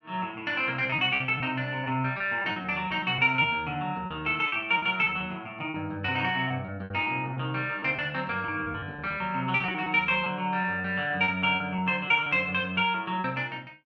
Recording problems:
packet loss; 9% of the sound replaced, filled with repeated pitch periods

